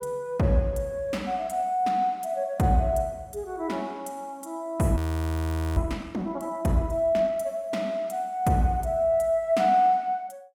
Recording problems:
audio freezing; at 5 s for 1 s

